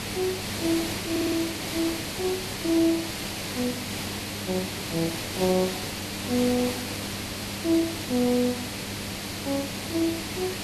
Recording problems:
electrical hum; 50 Hz, harmonics up to 900 Hz, SNR 13 dB
background hiss; SNR 3 dB
audio stuttering; at 1 s

